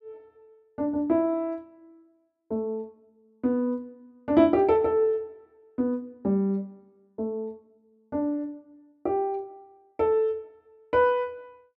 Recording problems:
none

